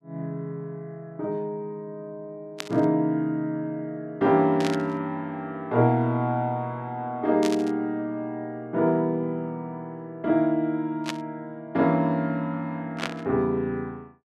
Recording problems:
static burst; 5 times, first at 2.5 s; peak 0 dB vs average level

